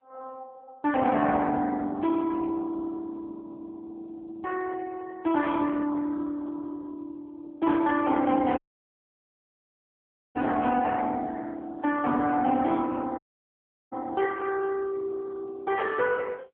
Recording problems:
phone line; 240 Hz to 2.7 kHz, AMR-NB
dropout; at 8.5 s for 2 s and at 13 s for 0.5 s

